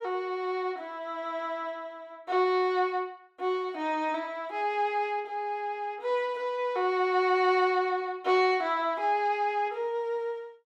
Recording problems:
none

